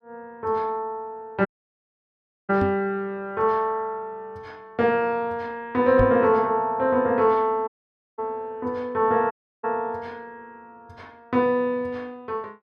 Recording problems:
dropout; at 1.5 s for 1 s, at 7.5 s for 0.5 s and at 9.5 s
microphone bump; at 2.5 s and at 6 s; peak +1 dB vs average level

